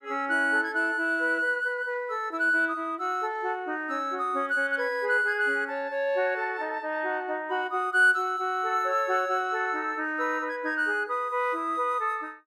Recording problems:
none

